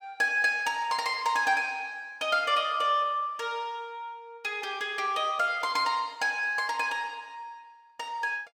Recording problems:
none

